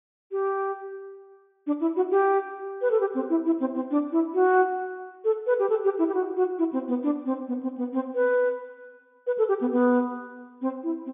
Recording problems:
treble missing; nothing above 3.6 kHz

